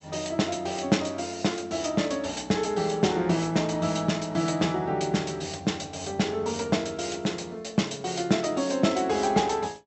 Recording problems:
treble missing; nothing above 8 kHz

